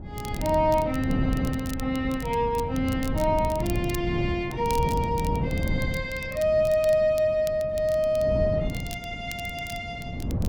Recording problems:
wind noise; below 210 Hz, SNR 6 dB
crackling; vinyl, SNR 18 dB

